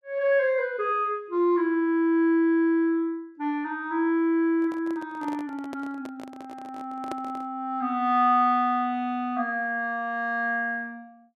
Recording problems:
microphone handling noise; from 4.5 to 7.5 s; peak -6 dB vs average level

